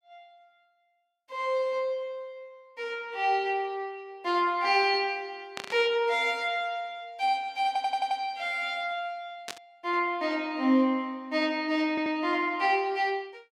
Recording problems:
static burst; at 5.5 s and at 9.5 s; peak -4 dB vs average level
stutter; at 7.5 s and at 12 s

